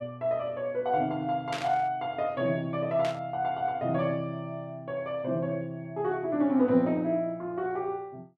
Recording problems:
burst of static; at 1.5 s and at 3 s; peak -2 dB vs average level

